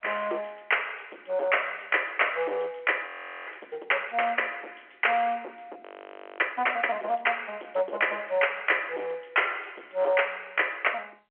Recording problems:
phone line; 300 Hz to 3.3 kHz, G.711
distorted audio; hard clipping, signal-to-distortion ratio 10 dB
frozen audio; at 3 s and at 6 s for 0.5 s

